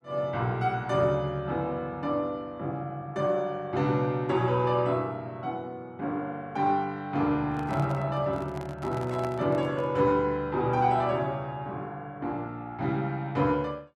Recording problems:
handling noise; from 7.5 to 10 s; peak -6 dB vs average level

